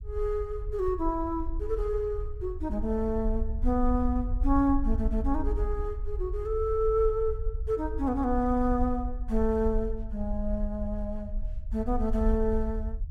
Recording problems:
low-frequency rumble; below 58 Hz, SNR 5 dB

